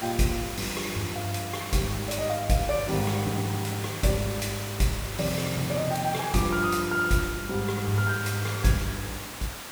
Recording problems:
hiss; slope -2 dB per octave, SNR 8 dB

